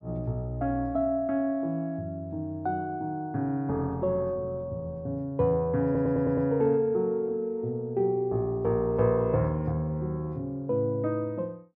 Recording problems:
stutter; at 6 s

